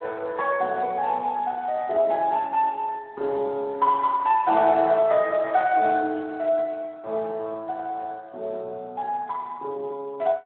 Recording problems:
telephone audio; 280 Hz to 3 kHz, Speex

